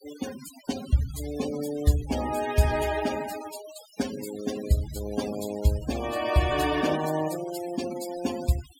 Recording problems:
noise reduction artefacts; signal-to-artefact ratio 12 dB

